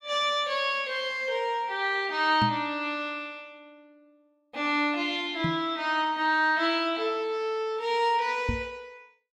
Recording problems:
knock on the microphone; at 2.5 s, at 5.5 s and at 8.5 s; peak +1 dB vs average level

